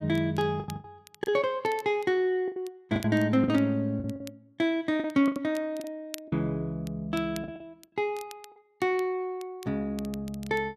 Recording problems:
crackling; vinyl, SNR 22 dB
packet loss; 8% of the sound replaced, filled with the last packet

